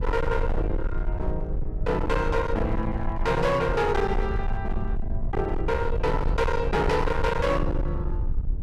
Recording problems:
distortion; hard clipping, signal-to-distortion ratio 8 dB
rumble; below 82 Hz, SNR 4 dB

